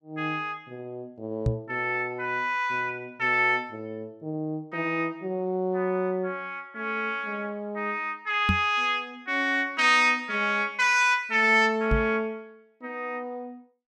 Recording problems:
microphone bump; at 1.5 s, at 8.5 s and at 12 s; peak +4 dB vs average level

